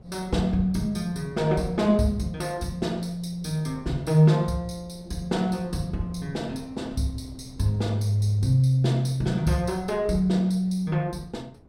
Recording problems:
wind on the microphone; below 310 Hz, SNR 23 dB

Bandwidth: 16 kHz